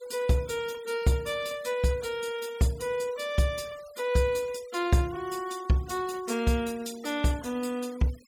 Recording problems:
denoising artefacts; signal-to-artefact ratio 20 dB

